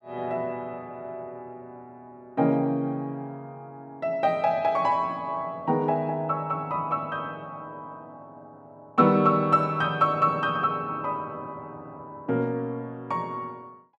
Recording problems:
none

